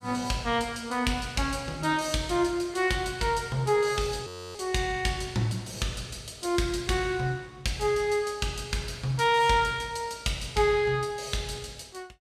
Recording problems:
audio freezing; at 4.5 s

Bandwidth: 14.5 kHz